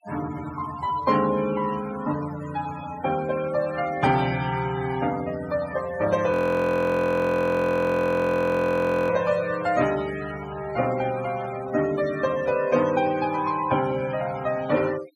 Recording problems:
noise reduction artefacts; signal-to-artefact ratio 16 dB
frozen audio; at 6.5 s for 3 s

